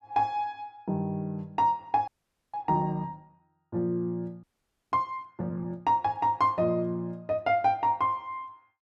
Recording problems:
audio freezing; at 2 s and at 4.5 s

